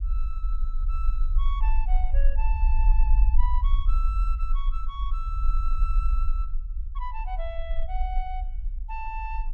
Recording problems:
rumble; below 44 Hz, strongest tone 22 Hz, SNR -10 dB

